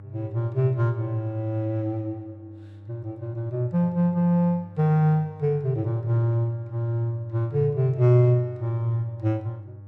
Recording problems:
hum; 50 Hz, harmonics up to 600 Hz, SNR 20 dB

